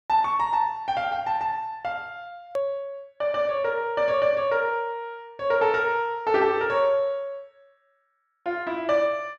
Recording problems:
click at an edit; at 2.5 s

